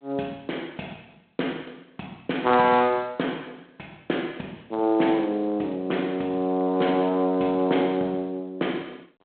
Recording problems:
phone line; 220 Hz to 3.7 kHz, G.726

